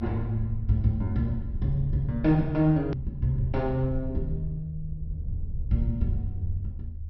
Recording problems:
low-pass filter; nothing above 6 kHz
rumble; below 78 Hz, SNR 8 dB
hard cut with a click; at 3 s

